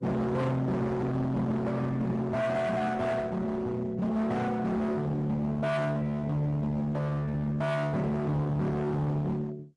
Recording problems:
lossy codec; Opus, then MP3, log-spectral distance 2 dB, nothing above 11 kHz
distorted audio; hard clipping, uneven, signal-to-distortion ratio 6 dB

